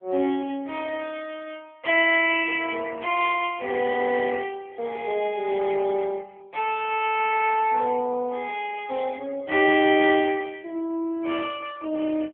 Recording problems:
phone line; 240 Hz to 3.3 kHz, AMR-NB
burst of static; at 7.5 s; peak -15 dB vs average level

